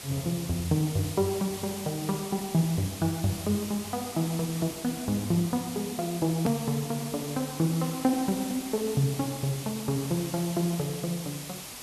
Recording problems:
hiss; slope -1 dB per octave, SNR 9 dB
click at an edit; at 6.5 s

